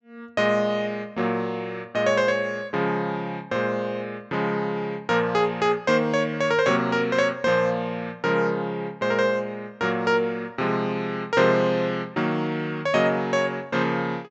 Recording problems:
treble missing; nothing above 8 kHz

